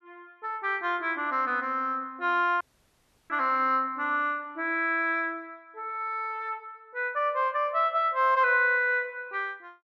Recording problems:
audio cutting out; at 2.5 s for 0.5 s

